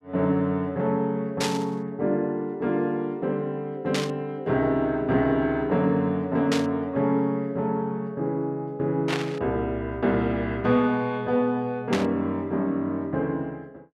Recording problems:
burst of static; 5 times, first at 1.5 s; peak +1 dB vs average level

